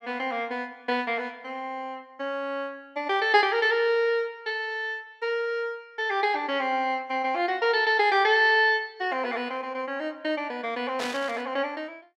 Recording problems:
static burst; at 11 s; peak -4 dB vs average level

